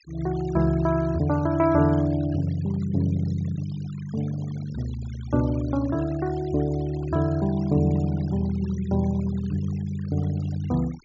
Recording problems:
low-pass filter; nothing above 7.3 kHz
noise reduction artefacts; signal-to-artefact ratio 21 dB

